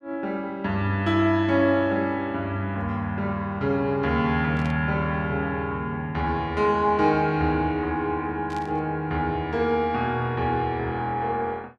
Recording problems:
burst of static; at 4.5 s and at 8.5 s; peak -13 dB vs average level

